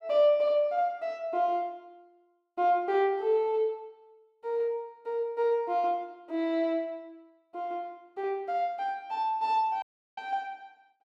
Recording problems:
dropout; at 10 s

